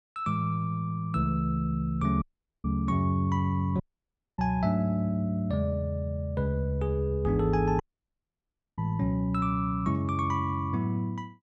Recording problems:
audio cutting out; at 2 s, at 4 s for 0.5 s and at 8 s for 1 s

